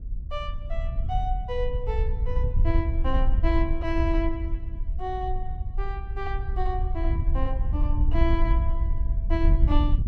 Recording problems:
wind on the microphone; below 64 Hz, SNR -5 dB

